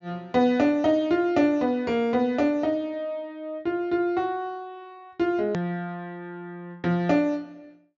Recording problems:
treble cut off; nothing above 7.2 kHz
click at an edit; at 5.5 s

